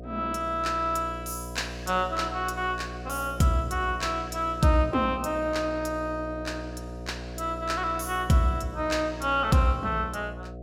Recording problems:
mains hum; 60 Hz, harmonics up to 720 Hz, SNR 11 dB

